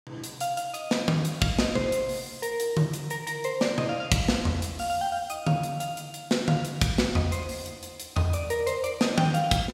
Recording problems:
none

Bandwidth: 16 kHz